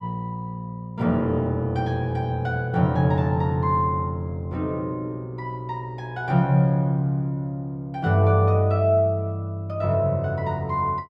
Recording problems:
none

